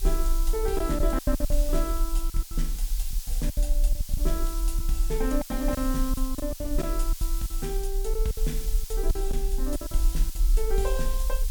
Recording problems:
background hiss; slope +4 dB per octave, SNR 7 dB
rumble; below 40 Hz, strongest tone 28 Hz, SNR -2 dB
packet loss; 12% of the sound replaced, filled with silence

